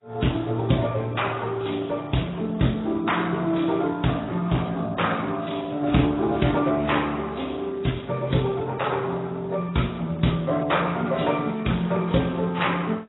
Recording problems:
lossy compression; Speex, then AAC, log-spectral distance 6 dB, nothing above 3.8 kHz

